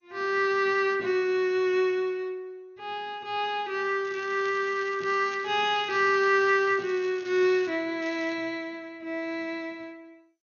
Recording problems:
lossy codec; MP2, log-spectral distance 2 dB, nothing above 5.8 kHz
crackle; from 4 to 7.5 s and at 8 s; loose cable, SNR 22 dB

